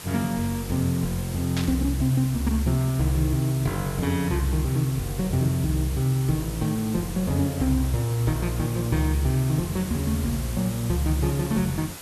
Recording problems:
hiss; slope -2 dB per octave, SNR 13 dB
static burst; at 1.5 s; peak -3 dB vs average level

